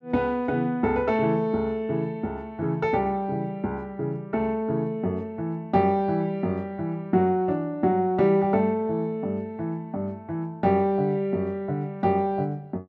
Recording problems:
none

